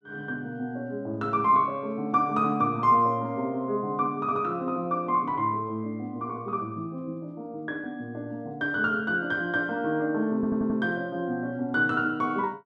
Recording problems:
audio stuttering; at 10 s

